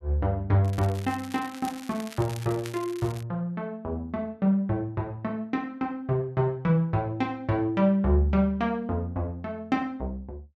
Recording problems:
crackling; from 0.5 to 3 s; loose cable, SNR 17 dB

